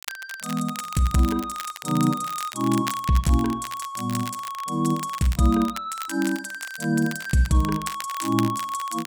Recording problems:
crackling; vinyl, SNR 13 dB

